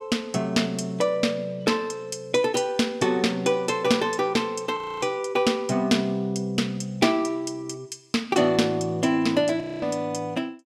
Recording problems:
audio freezing; at 5 s and at 9.5 s

